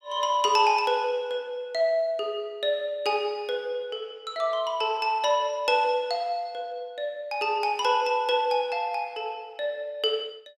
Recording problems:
none

